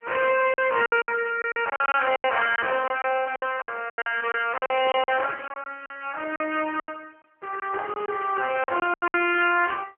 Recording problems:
phone line; 300 Hz to 3.1 kHz, AMR-NB
packet loss; 14% of the sound replaced, filled with silence

